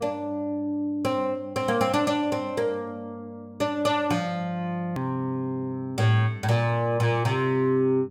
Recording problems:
hum; 50 Hz, harmonics up to 600 Hz, SNR 21 dB
hard cut with a click; at 5 s

